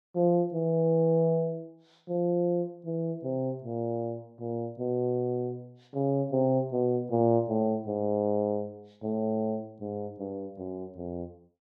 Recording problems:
none

